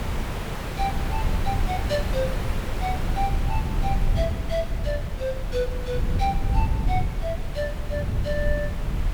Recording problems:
background hiss; slope -5 dB per octave, SNR 5 dB
rumble; below 98 Hz, SNR -2 dB

